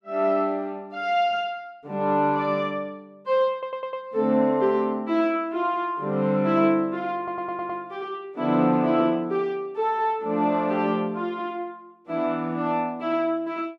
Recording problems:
stutter; at 3.5 s and at 7 s

